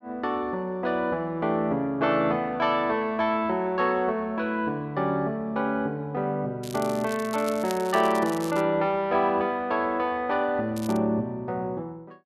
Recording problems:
crackle; from 6.5 to 8.5 s and at 11 s; loose cable, SNR 16 dB

